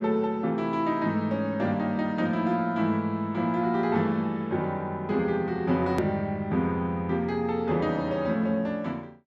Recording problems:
edit click; at 6 s

